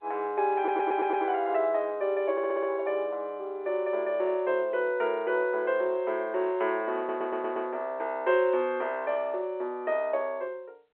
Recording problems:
phone line; 300 Hz to 3.2 kHz, G.711
stutter; at 0.5 s, at 2.5 s and at 7 s

